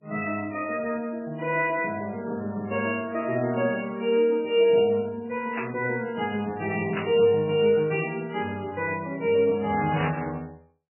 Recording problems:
codec artefacts; MP3, log-spectral distance 4 dB, nothing above 2.4 kHz
burst of static; at 5.5 s, at 7 s and at 10 s; peak -1 dB vs average level

